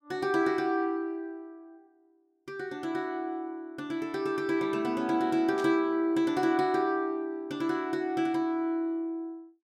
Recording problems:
static burst; at 5.5 s; peak -11 dB vs average level

